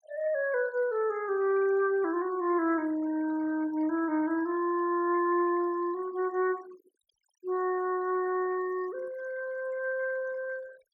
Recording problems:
noise reduction artefacts; signal-to-artefact ratio 22 dB

